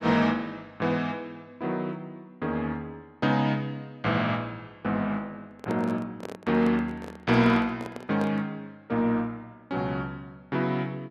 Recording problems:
microphone handling noise; from 5.5 to 8.5 s; peak -4 dB vs average level

